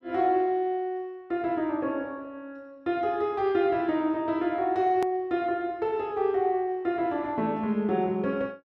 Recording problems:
click at an edit; at 5 s

